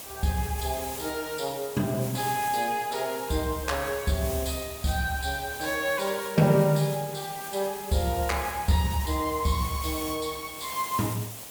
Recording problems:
background hiss; SNR 10 dB

